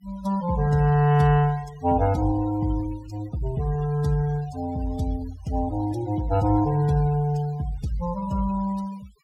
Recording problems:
noise reduction artefacts; signal-to-artefact ratio 22 dB

